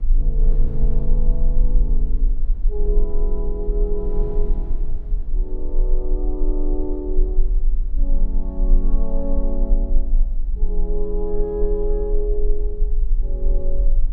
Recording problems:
rumble; below 34 Hz, strongest tone 24 Hz, SNR -6 dB
wind on the microphone; below 160 Hz, SNR 11 dB

